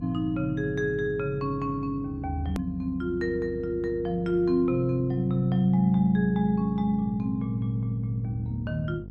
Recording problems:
hum; 50 Hz, harmonics up to 500 Hz, SNR 14 dB
edit click; at 2.5 s

